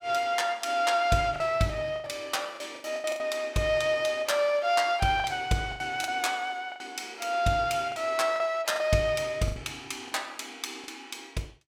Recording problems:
lost packets; 8% of the sound replaced, filled with the last packet

